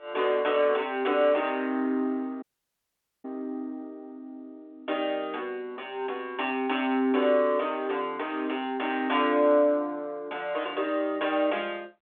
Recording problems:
phone line; 260 Hz to 3.5 kHz, G.726
audio cutting out; at 2.5 s for 1 s

